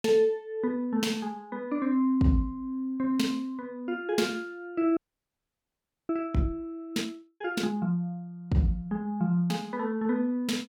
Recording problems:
audio freezing; at 5 s for 1 s

